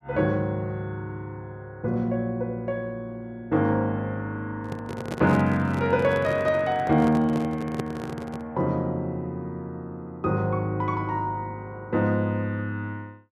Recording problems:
microphone handling noise; from 4.5 to 8.5 s; peak 0 dB vs average level

